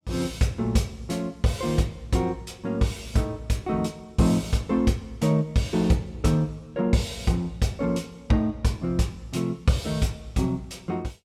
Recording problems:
none

